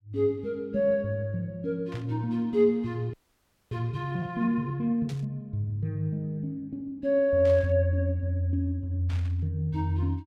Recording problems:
burst of static; 4 times, first at 2 s; peak -13 dB vs average level
frozen audio; at 3 s for 0.5 s

